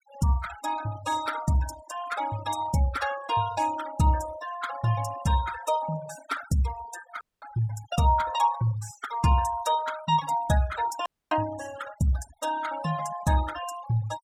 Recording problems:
denoising artefacts; signal-to-artefact ratio 14 dB
audio cutting out; at 7 s and at 11 s

